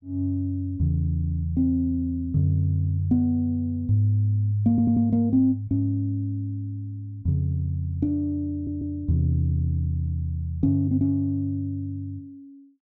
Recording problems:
stutter; at 4.5 s and at 8.5 s

